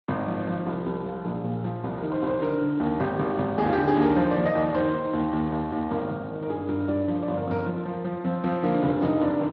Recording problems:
lossy codec; MP2, then Speex, log-spectral distance 2 dB

